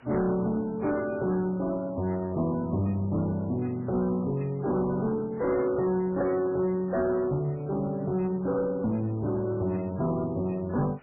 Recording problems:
lossy codec; MP3, then AAC, log-spectral distance 3 dB, nothing above 2.2 kHz
distorted audio; soft clipping, signal-to-distortion ratio 11 dB
hiss; SNR 29 dB

